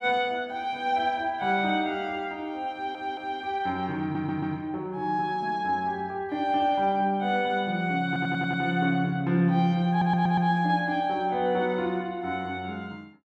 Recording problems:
stutter; 4 times, first at 2.5 s

